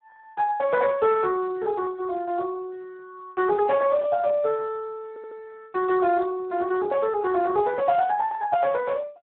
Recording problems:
telephone audio; 280 Hz to 2.8 kHz, Speex
audio stuttering; at 5 s

